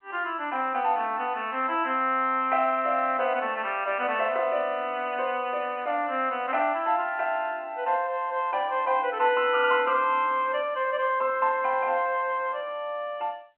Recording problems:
phone line; 220 Hz to 3.1 kHz, G.711

